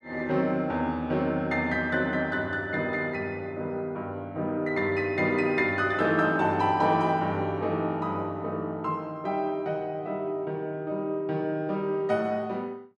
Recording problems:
none

